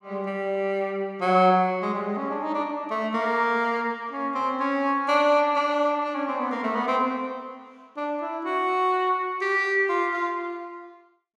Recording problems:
none

